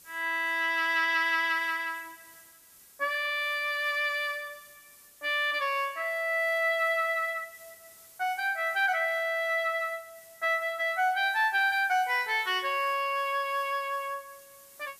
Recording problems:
hiss; SNR 24 dB

